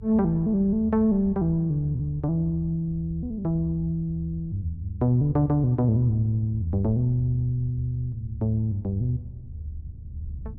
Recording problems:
rumble; below 78 Hz, strongest tone 76 Hz, SNR 13 dB

